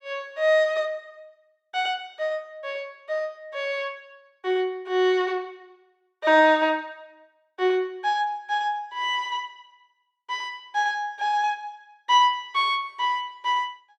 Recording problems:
none

